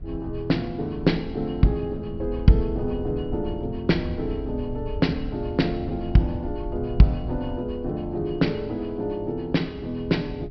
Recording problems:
low-pass filter; nothing above 5.5 kHz
wind on the microphone; below 84 Hz, SNR 12 dB

